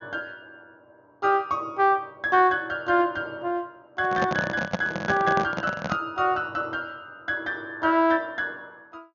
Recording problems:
treble missing; nothing above 6.6 kHz
microphone handling noise; from 4 to 6 s; peak +3 dB vs average level

